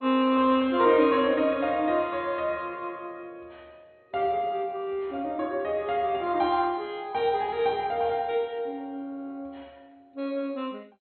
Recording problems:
codec artefacts; MP2, log-spectral distance 2 dB, nothing above 3.8 kHz

